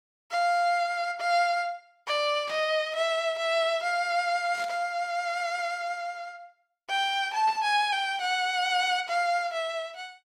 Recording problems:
burst of static; at 2.5 s, at 4.5 s and at 7.5 s; peak -11 dB vs average level

